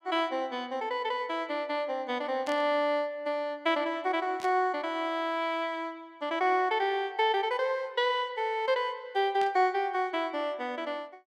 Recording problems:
burst of static; at 2.5 s, at 4.5 s and at 9.5 s; peak -9 dB vs average level

